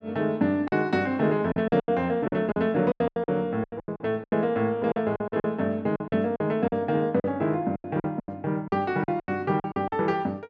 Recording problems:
packet loss; 15% of the sound replaced, filled with silence

